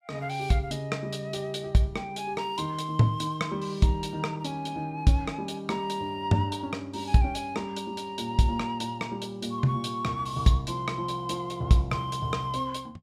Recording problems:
none

